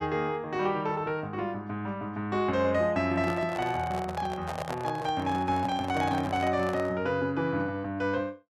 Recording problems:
handling noise; from 3 to 7 s; peak -2 dB vs average level

